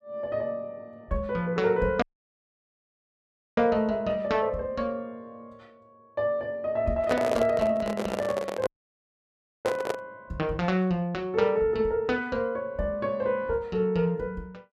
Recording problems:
audio cutting out; at 2 s for 1.5 s and at 8.5 s for 1 s
handling noise; from 7 to 10 s; peak +2 dB vs average level

